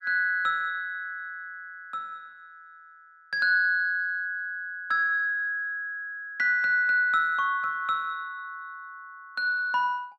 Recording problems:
none

